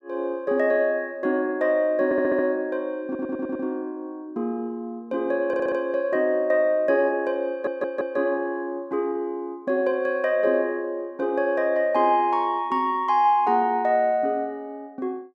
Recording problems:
audio stuttering; 4 times, first at 2 s

